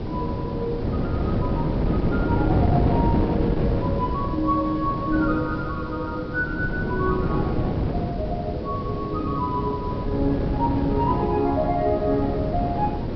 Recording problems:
treble cut off; nothing above 5.5 kHz
background hiss; SNR 24 dB
wind noise; below 360 Hz, SNR -1 dB

